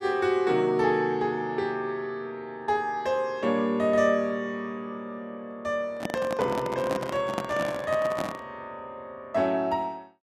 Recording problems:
handling noise; from 6 to 8.5 s; peak 0 dB vs average level

